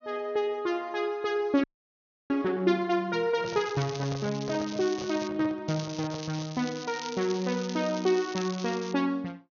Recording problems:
low-pass filter; nothing above 6.6 kHz
frozen audio; at 1.5 s for 0.5 s
handling noise; from 3.5 to 6.5 s; peak -7 dB vs average level
crackling; from 3.5 to 5.5 s and from 5.5 to 9 s; loose cable, SNR 13 dB

